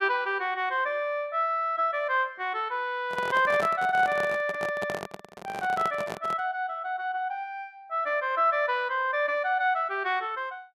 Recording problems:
handling noise; from 3 to 6.5 s; peak -3 dB vs average level

